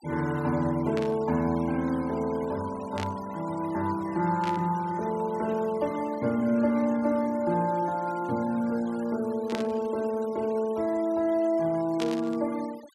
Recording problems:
denoising artefacts; signal-to-artefact ratio 20 dB
burst of static; 5 times, first at 1 s; peak -3 dB vs average level

